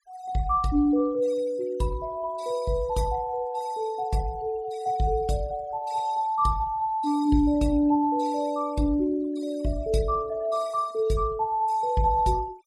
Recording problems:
denoising artefacts; signal-to-artefact ratio 25 dB

